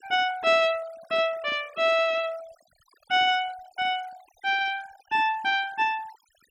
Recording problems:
noise reduction artefacts; signal-to-artefact ratio 21 dB

